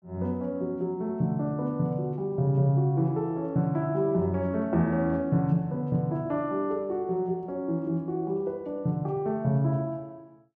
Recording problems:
none

